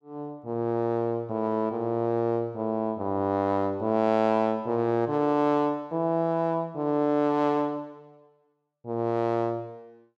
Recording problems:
none

